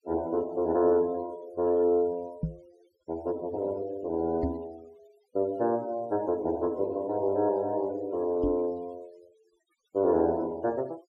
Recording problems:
denoising artefacts; signal-to-artefact ratio 27 dB
knock on the microphone; at 2.5 s, at 4.5 s and at 8.5 s; peak +2 dB vs average level

